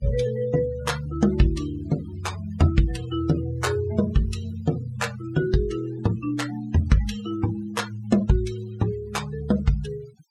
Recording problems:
noise reduction artefacts; signal-to-artefact ratio 17 dB

